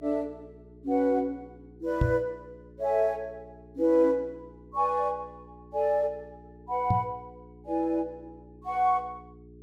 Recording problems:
electrical hum; 60 Hz, harmonics up to 420 Hz, SNR 23 dB
microphone bump; at 2 s and at 7 s; peak +6 dB vs average level

